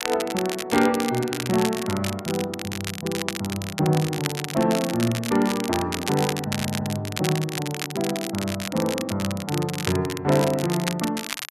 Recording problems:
crackling; vinyl, SNR 7 dB
stutter; at 6.5 s

